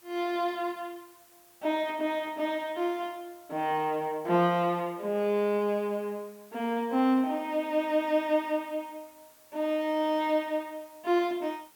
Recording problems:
hiss; slope -1 dB per octave, SNR 27 dB

